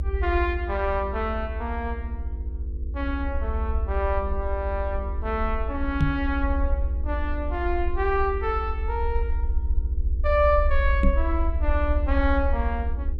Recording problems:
electrical hum; 50 Hz, harmonics up to 500 Hz, SNR 18 dB
low-frequency rumble; below 70 Hz, SNR 1 dB
microphone bump; at 6 s and at 11 s; peak +8 dB vs average level

